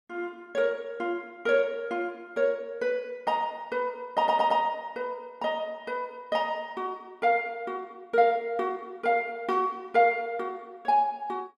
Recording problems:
audio stuttering; at 4 s

